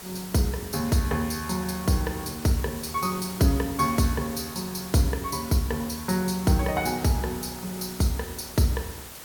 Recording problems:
background hiss; slope -2 dB per octave, SNR 13 dB

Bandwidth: 18.5 kHz